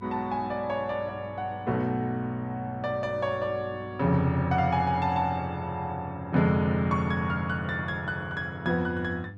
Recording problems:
mains hum; 50 Hz, harmonics up to 700 Hz, SNR 18 dB

